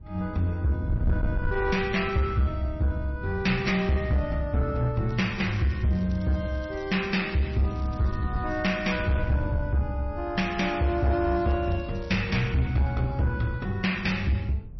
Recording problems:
lossy codec; MP3, log-spectral distance 2 dB, nothing above 5.8 kHz
distorted audio; soft clipping, signal-to-distortion ratio 12 dB
wind on the microphone; below 110 Hz, SNR 10 dB
crackle; from 5 to 9 s and from 10 to 12 s; loose cable, SNR 27 dB

